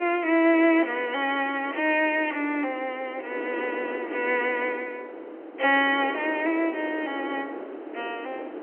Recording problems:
telephone audio; 280 Hz to 3.2 kHz, G.711
wind on the microphone; below 610 Hz, SNR 12 dB

